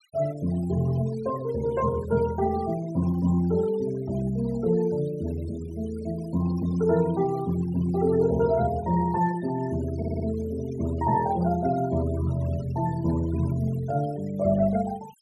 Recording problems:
noise reduction artefacts; signal-to-artefact ratio 19 dB
audio stuttering; at 10 s

